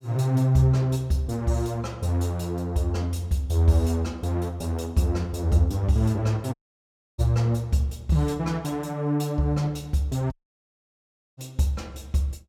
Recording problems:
dropout; at 6.5 s for 0.5 s and at 10 s for 1 s

